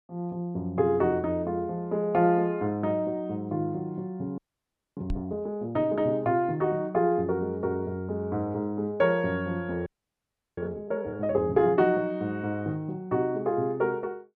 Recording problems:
audio freezing; at 4.5 s for 0.5 s and at 10 s for 0.5 s
knock on the microphone; at 5 s; peak 0 dB vs average level

